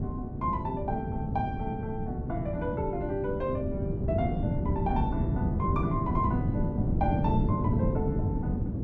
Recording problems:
wind on the microphone; below 220 Hz, SNR -3 dB

